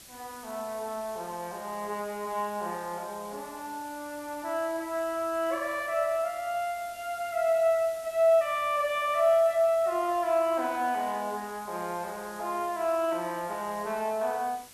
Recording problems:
hiss; SNR 19 dB

